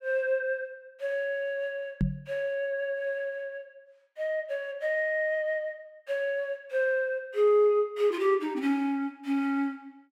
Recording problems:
knock on the microphone; at 2 s; peak +5 dB vs average level

